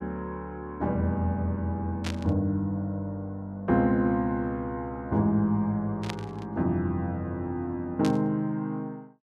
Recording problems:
static burst; at 2 s, at 6 s and at 8 s; peak -2 dB vs average level

